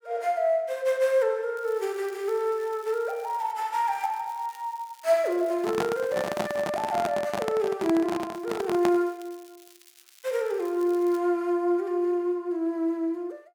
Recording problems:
crackling; from 1.5 to 3.5 s, from 4 to 6.5 s and from 8.5 to 11 s; loose cable, SNR 26 dB
microphone handling noise; from 5.5 to 9 s; peak +2 dB vs average level

